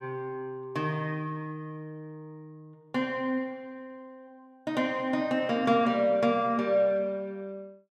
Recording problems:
none

